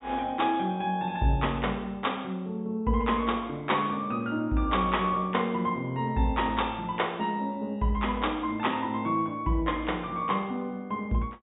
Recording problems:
low-pass filter; nothing above 4 kHz

